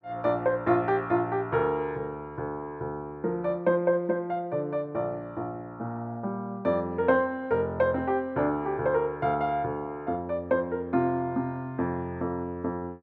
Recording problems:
none

